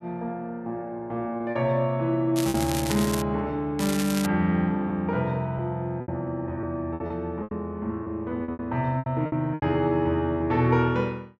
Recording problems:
packet loss; 7% of the sound replaced, filled with repeated pitch periods
crackling; at 2.5 s and at 4 s; loose cable, SNR 8 dB

